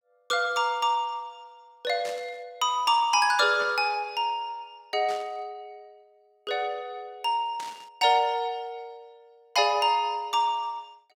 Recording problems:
burst of static; 4 times, first at 2 s; peak -11 dB vs average level

